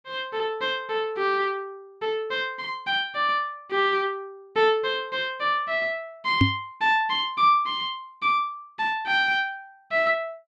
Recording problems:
microphone thump; at 6.5 s; peak +8 dB vs average level

